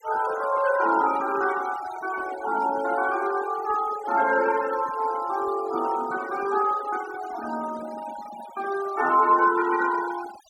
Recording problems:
denoising artefacts; signal-to-artefact ratio 16 dB

